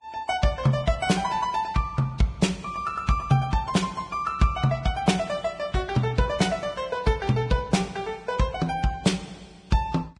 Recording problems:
lossy codec; Vorbis, log-spectral distance 3 dB

